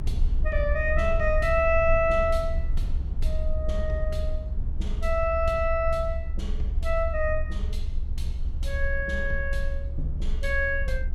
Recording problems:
rumble; below 66 Hz, strongest tone 22 Hz, SNR 3 dB

